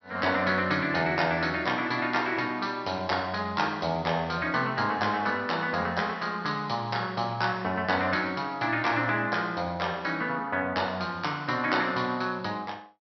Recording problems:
treble cut off; nothing above 5.8 kHz

